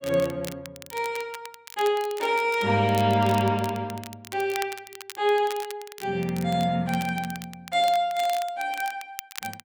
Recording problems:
crackling; vinyl, SNR 16 dB

